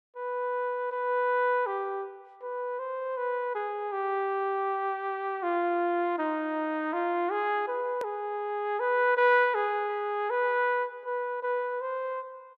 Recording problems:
edit click; at 8 s

